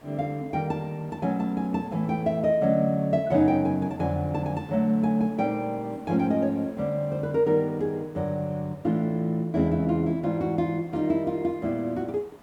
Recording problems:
hiss; SNR 26 dB

